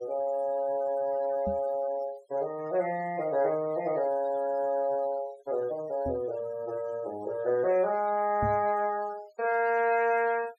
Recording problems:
noise reduction artefacts; signal-to-artefact ratio 21 dB
microphone thump; at 1.5 s, at 6 s and at 8.5 s; peak -1 dB vs average level

